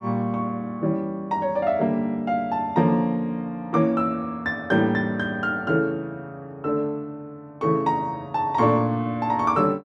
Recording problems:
none

